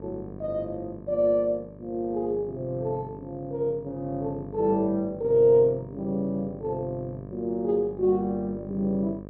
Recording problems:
mains hum; 50 Hz, harmonics up to 1.2 kHz, SNR 15 dB

